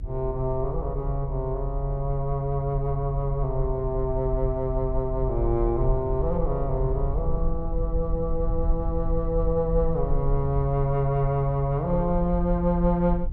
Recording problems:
rumble; below 54 Hz, SNR 5 dB

